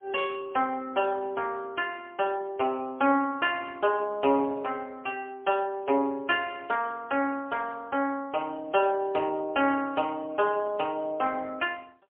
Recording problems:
phone line; 300 Hz to 3.3 kHz, AMR-NB, then MP3

